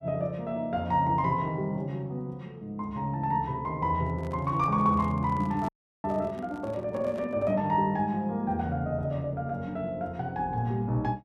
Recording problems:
microphone handling noise; from 4 to 7.5 s; peak -10 dB vs average level
frozen audio; at 5.5 s

